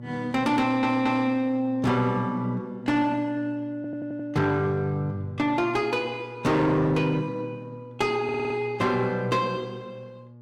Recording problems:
distorted audio; soft clipping, signal-to-distortion ratio 11 dB
hum; 60 Hz, harmonics up to 840 Hz, SNR 17 dB
stutter; at 0.5 s, at 4 s and at 8 s

